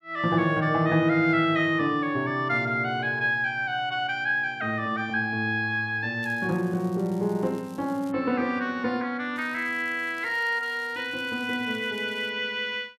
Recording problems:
crackling; from 6 to 8 s and from 9.5 to 12 s; loose cable, SNR 27 dB

